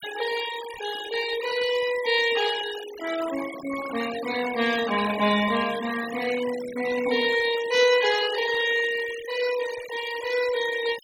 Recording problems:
denoising artefacts; signal-to-artefact ratio 11 dB

